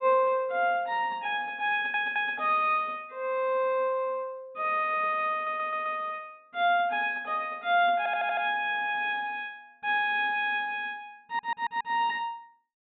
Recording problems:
treble cut off; nothing above 4 kHz
stutter; 4 times, first at 1.5 s

